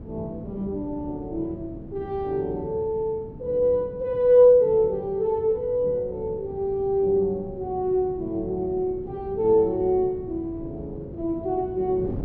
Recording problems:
wind on the microphone; below 280 Hz, SNR 16 dB

